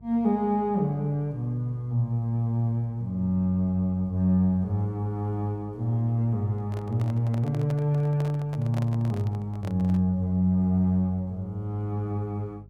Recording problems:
hum; 50 Hz, harmonics up to 450 Hz, SNR 25 dB
microphone handling noise; from 6.5 to 10 s; peak -8 dB vs average level

